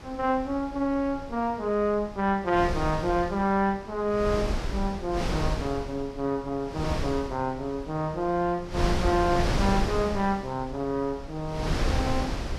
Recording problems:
wind noise; below 470 Hz, SNR 4 dB

